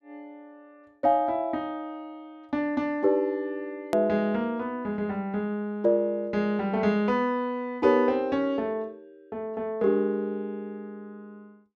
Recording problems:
edit click; at 4 s

